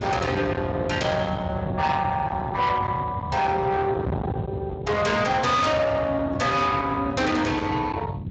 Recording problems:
lossy compression; Speex, log-spectral distance 3 dB, nothing above 7.3 kHz
distortion; soft clipping, signal-to-distortion ratio 6 dB
wind on the microphone; below 900 Hz, SNR 7 dB

